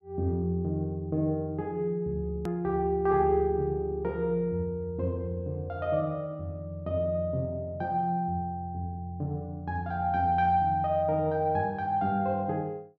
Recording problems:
edit click; at 2.5 s

